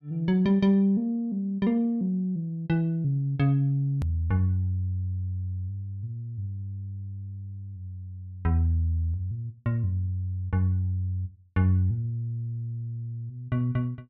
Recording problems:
hard cut with a click; at 4 s

